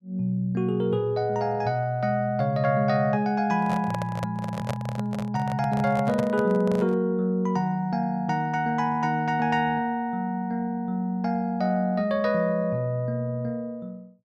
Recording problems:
microphone handling noise; from 3.5 to 7 s; peak -1 dB vs average level

